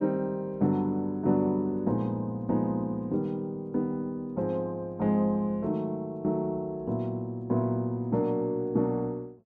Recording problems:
none

